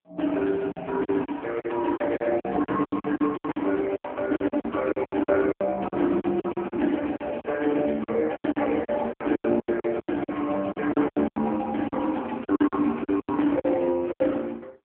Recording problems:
phone line; 240 Hz to 3.2 kHz, AMR-NB
packet loss; 17% of the sound replaced, filled with silence

